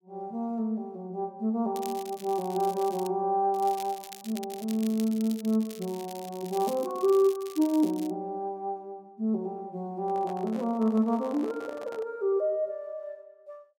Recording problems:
crackling; from 2 to 3 s and from 3.5 to 8 s; loose cable, SNR 17 dB
handling noise; from 10 to 12 s; peak -10 dB vs average level

